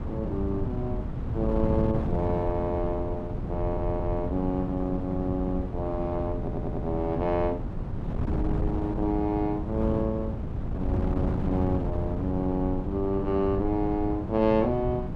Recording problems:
wind on the microphone; below 200 Hz, SNR 3 dB
stutter; at 3.5 s and at 6.5 s

